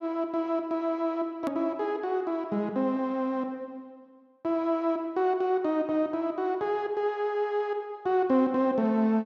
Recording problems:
hard cut with a click; at 1.5 s

